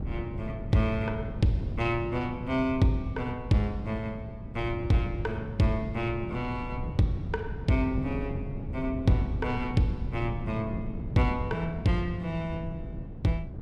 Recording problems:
wind noise; below 180 Hz, SNR 8 dB

